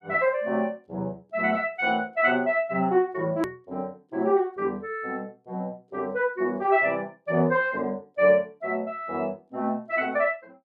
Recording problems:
edit click; at 3.5 s

